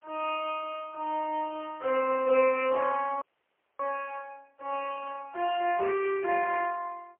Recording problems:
phone line; 320 Hz to 3.1 kHz, AMR-NB, then MP3
audio freezing; at 3 s for 0.5 s

